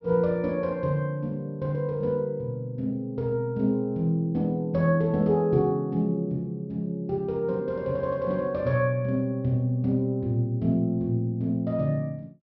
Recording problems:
low-pass filter; nothing above 5.7 kHz

